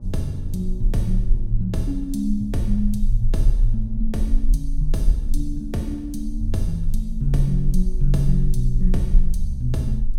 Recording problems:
hum; 60 Hz, harmonics up to 840 Hz, SNR 18 dB
low-frequency rumble; below 38 Hz, strongest tone 22 Hz, SNR 1 dB

